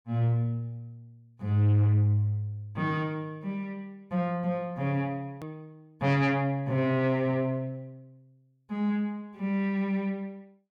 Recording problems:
distortion; soft clipping, signal-to-distortion ratio 12 dB
edit click; at 5.5 s

